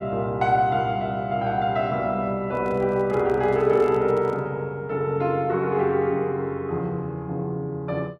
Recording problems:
handling noise; from 2.5 to 4.5 s; peak -11 dB vs average level

